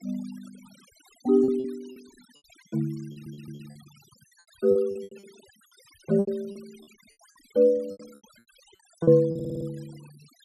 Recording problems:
denoising artefacts; signal-to-artefact ratio 28 dB
packet loss; 14% of the sound replaced, filled with repeated pitch periods
audio stuttering; at 3 s and at 9.5 s

